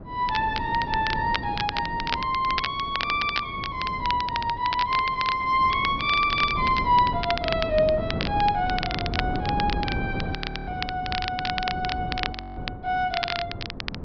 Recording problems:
low-pass filter; nothing above 5.5 kHz
wind on the microphone; below 330 Hz, SNR 9 dB
crackle; vinyl, SNR 7 dB
frozen audio; at 10 s and at 12 s

